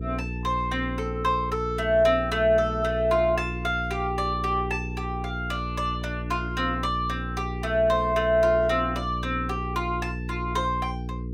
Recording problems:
electrical hum; 60 Hz, harmonics up to 480 Hz, SNR 7 dB

